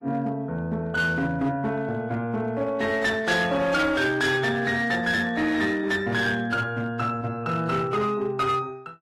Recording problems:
codec artefacts; AAC, log-spectral distance 2 dB, nothing above 13.1 kHz
distortion; hard clipping, signal-to-distortion ratio 12 dB

